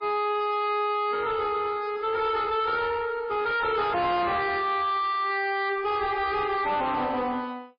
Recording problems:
lossy codec; MP3, log-spectral distance 3 dB, nothing above 4.4 kHz
distortion; soft clipping, signal-to-distortion ratio 6 dB

